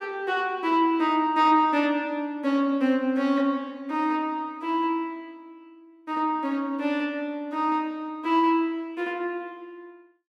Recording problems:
none

